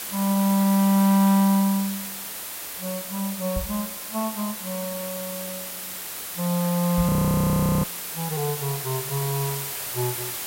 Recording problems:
background hiss; slope 0 dB per octave, SNR 6 dB
microphone bump; at 3.5 s and at 7 s; peak -2 dB vs average level
audio freezing; at 7 s for 0.5 s

